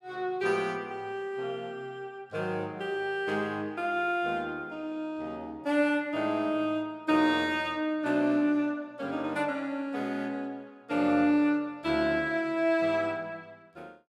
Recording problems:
none

